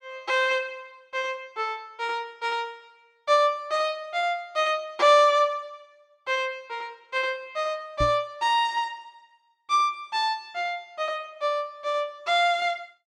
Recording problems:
microphone thump; at 8 s; peak -1 dB vs average level

